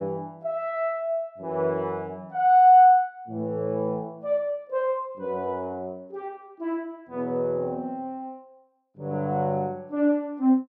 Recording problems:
none

